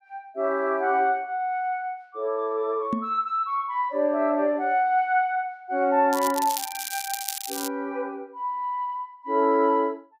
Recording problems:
microphone bump; at 3 s; peak +2 dB vs average level
crackle; from 6 to 7.5 s; loose cable, SNR 6 dB

